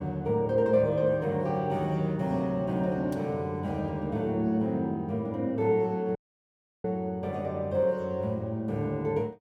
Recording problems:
dropout; at 6 s for 0.5 s

